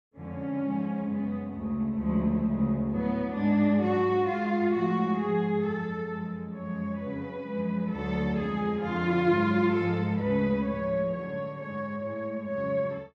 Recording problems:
none

